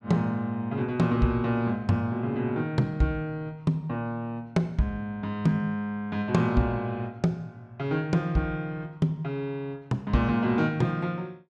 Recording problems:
none

